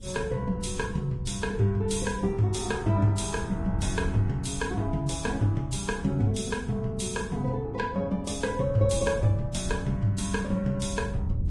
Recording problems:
codec artefacts; Vorbis, log-spectral distance 3 dB, nothing above 10.4 kHz
wind on the microphone; below 120 Hz, SNR 9 dB

